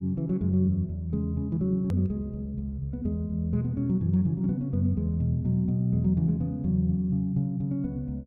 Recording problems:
edit click; at 2 s

